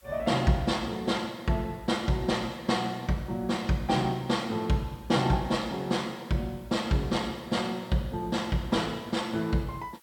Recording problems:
background hiss; SNR 29 dB

